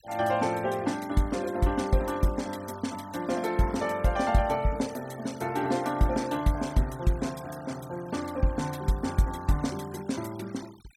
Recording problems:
noise reduction artefacts; signal-to-artefact ratio 20 dB

